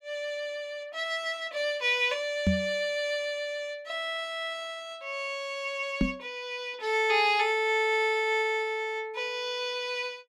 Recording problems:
microphone bump; at 2.5 s and at 6 s; peak +7 dB vs average level

